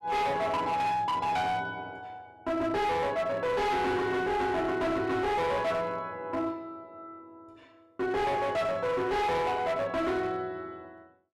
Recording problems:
distortion; hard clipping, signal-to-distortion ratio 7 dB

